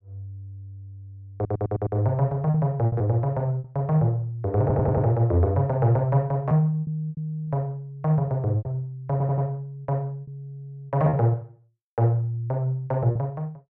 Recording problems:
lost packets; 5% of the sound replaced, filled with repeated pitch periods
stutter; at 1.5 s, at 4.5 s and at 9 s

